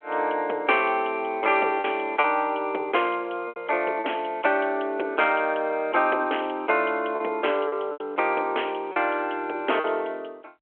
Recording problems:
phone line; 320 Hz to 3.3 kHz, G.726
lost packets; 4% of the sound replaced, filled with repeated pitch periods

